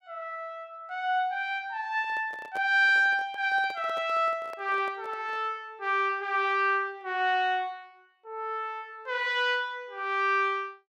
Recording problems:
handling noise; from 2 to 5.5 s; peak -10 dB vs average level

